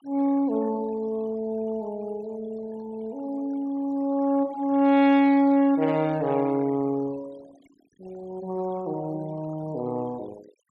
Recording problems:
denoising artefacts; signal-to-artefact ratio 24 dB

